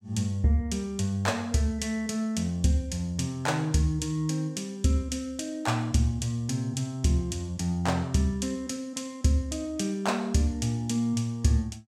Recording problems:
none

